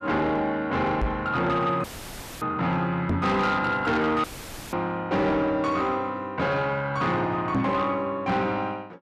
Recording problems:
distortion; soft clipping, signal-to-distortion ratio 11 dB
knock on the microphone; at 1 s, at 3 s and at 7.5 s; peak +4 dB vs average level
audio cutting out; at 2 s for 0.5 s and at 4 s; filled with static

